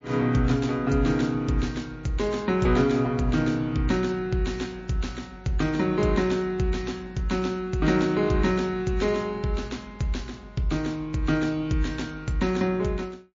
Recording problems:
lossy compression; MP3, log-spectral distance 2 dB, nothing above 7.1 kHz

